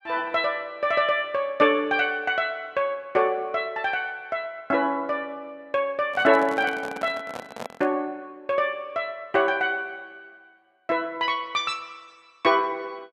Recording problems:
microphone handling noise; from 6 to 8 s; peak -6 dB vs average level

